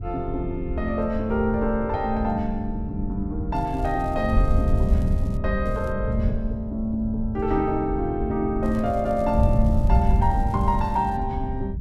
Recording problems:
wind on the microphone; below 92 Hz, SNR 2 dB
crackle; from 3.5 to 5.5 s, at 5.5 s and from 8.5 to 11 s; loose cable, SNR 28 dB

